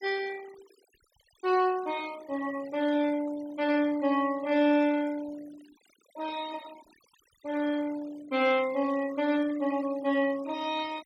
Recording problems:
denoising artefacts; signal-to-artefact ratio 20 dB

